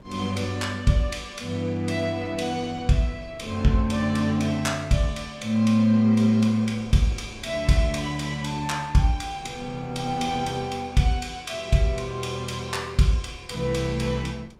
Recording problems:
wind on the microphone; below 390 Hz, SNR 25 dB

